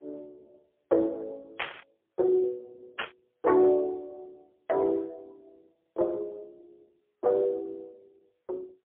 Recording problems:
phone line; 300 Hz to 2.2 kHz, AMR-NB, then MP3
burst of static; at 1.5 s and at 3 s; peak +1 dB vs average level

